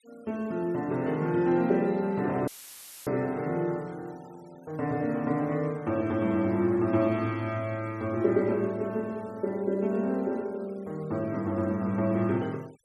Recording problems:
denoising artefacts; signal-to-artefact ratio 28 dB
dropout; at 2.5 s for 0.5 s; filled with static

